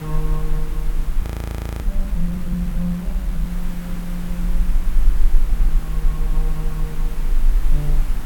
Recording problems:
hiss; SNR 6 dB
rumble; below 36 Hz, strongest tone 22 Hz, SNR -5 dB
audio freezing; at 1 s for 0.5 s

